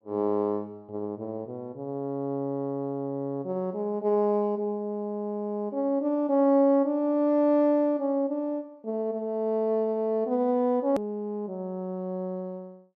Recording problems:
click at an edit; at 11 s

